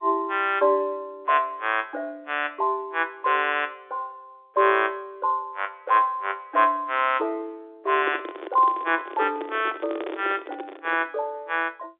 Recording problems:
telephone audio; 300 Hz to 3.7 kHz, G.711
handling noise; from 8 to 11 s; peak -3 dB vs average level

